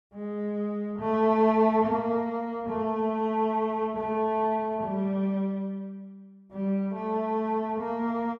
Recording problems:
none

